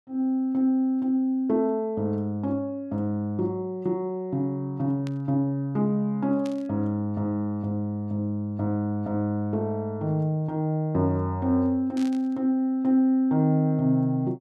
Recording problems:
static burst; at 5 s, at 6.5 s and at 12 s; peak -13 dB vs average level

